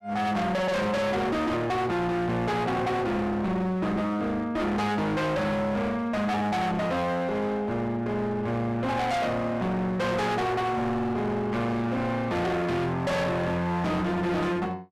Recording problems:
distorted audio; hard clipping, uneven, signal-to-distortion ratio 5 dB

